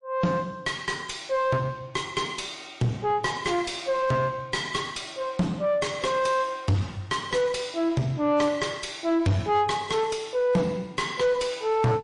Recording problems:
codec artefacts; MP3, log-spectral distance 3 dB, nothing above 10.4 kHz
distorted audio; soft clipping, signal-to-distortion ratio 7 dB

